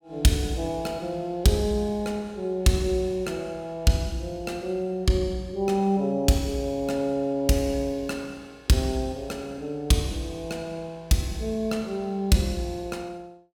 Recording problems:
none

